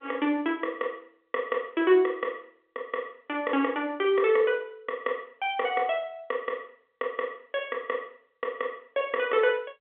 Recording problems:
phone line; 280 Hz to 3.4 kHz, G.711

